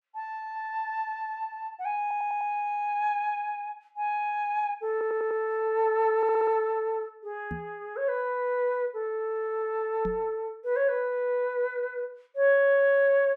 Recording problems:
audio stuttering; at 2 s, at 5 s and at 6 s
microphone thump; at 7.5 s and at 10 s; peak -4 dB vs average level

